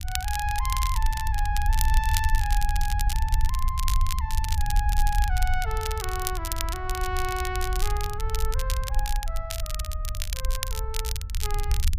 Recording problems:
rumble; below 62 Hz, SNR -3 dB
crackling; vinyl, SNR 3 dB

